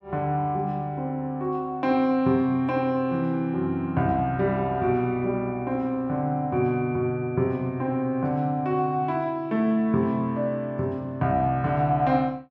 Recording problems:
none

